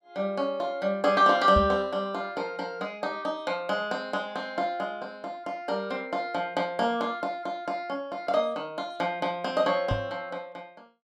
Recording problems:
microphone bump; at 1.5 s and at 10 s; peak +4 dB vs average level

